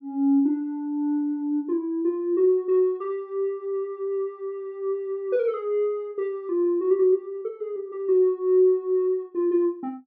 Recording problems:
none

